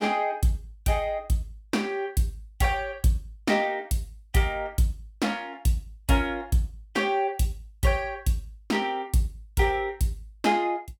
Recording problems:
none

